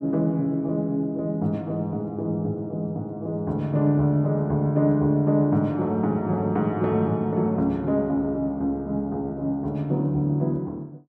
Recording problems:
none

